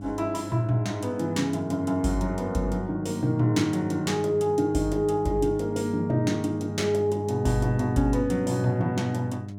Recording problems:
mains hum; 50 Hz, harmonics up to 700 Hz, SNR 11 dB

